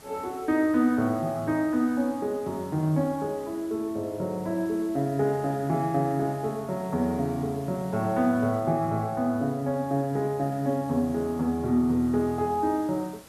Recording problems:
background hiss; slope -3 dB per octave, SNR 23 dB

